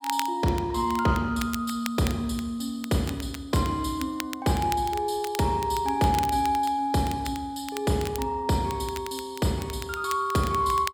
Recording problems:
crackling; vinyl, SNR 14 dB

